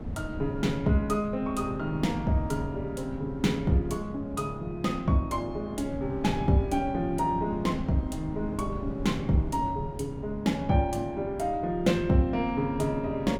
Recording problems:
wind on the microphone; below 230 Hz, SNR 10 dB

